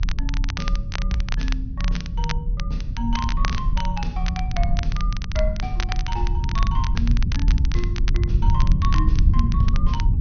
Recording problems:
low-pass filter; nothing above 6.3 kHz
hum; 50 Hz, harmonics up to 350 Hz, SNR 16 dB
rumble; below 78 Hz, SNR -7 dB
crackle; vinyl, SNR 5 dB

